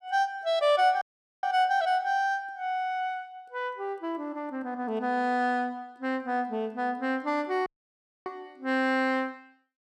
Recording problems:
dropout; at 1 s and at 7.5 s for 0.5 s

